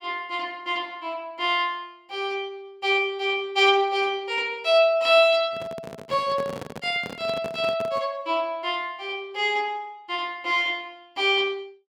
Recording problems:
microphone handling noise; from 5.5 to 8 s; peak -7 dB vs average level

